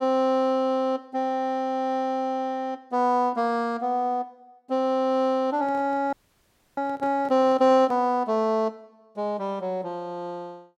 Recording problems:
handling noise; from 5.5 to 8 s; peak -11 dB vs average level
frozen audio; at 6 s for 0.5 s

